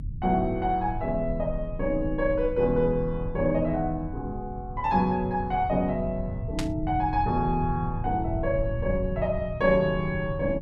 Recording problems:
rumble; below 120 Hz, SNR 9 dB
static burst; at 6.5 s; peak -2 dB vs average level

